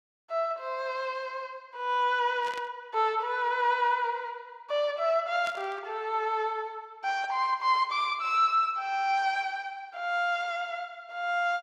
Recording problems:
static burst; at 2.5 s and at 5.5 s; peak -8 dB vs average level

